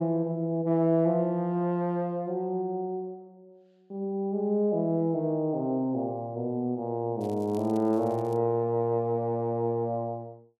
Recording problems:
crackle; from 7 to 8.5 s; loose cable, SNR 28 dB

